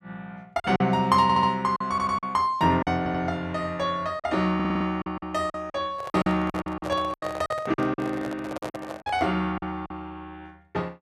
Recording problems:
packet loss; 10% of the sound replaced, filled with silence
audio stuttering; 4 times, first at 1 s
microphone handling noise; from 6 to 9.5 s; peak -4 dB vs average level

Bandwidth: 13.5 kHz